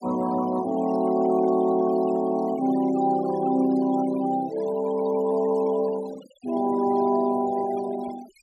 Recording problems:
noise reduction artefacts; signal-to-artefact ratio 19 dB

